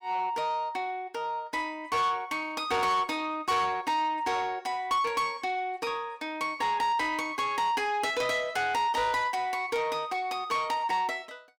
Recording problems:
distorted audio; soft clipping, signal-to-distortion ratio 11 dB

